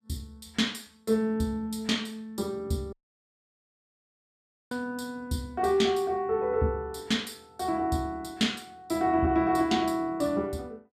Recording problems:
dropout; at 3 s for 2 s

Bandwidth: 14.5 kHz